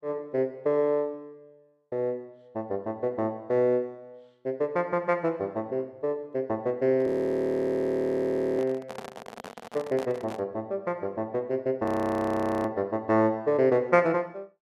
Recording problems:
handling noise; from 7 to 10 s; peak -7 dB vs average level
frozen audio; at 7 s for 1.5 s and at 12 s for 1 s

